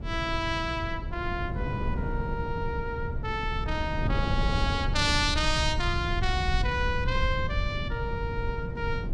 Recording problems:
low-frequency rumble; below 96 Hz, SNR 4 dB
wind on the microphone; below 220 Hz, SNR 6 dB

